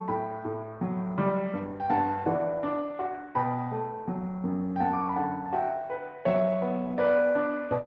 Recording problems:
lossy compression; MP2, then Opus, log-spectral distance 2 dB

